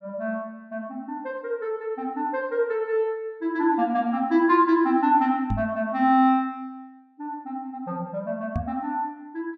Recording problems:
knock on the microphone; at 5.5 s and at 8.5 s; peak +1 dB vs average level

